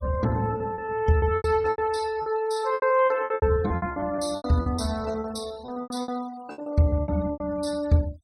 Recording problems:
denoising artefacts; signal-to-artefact ratio 22 dB
lost packets; 18% of the sound replaced, filled with repeated pitch periods

